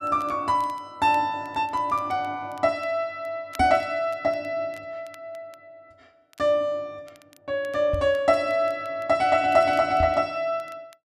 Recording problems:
crackling; vinyl, SNR 30 dB
microphone bump; at 3.5 s, at 8 s and at 10 s; peak -1 dB vs average level

